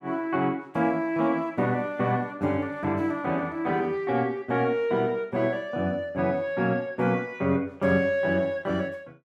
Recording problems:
none

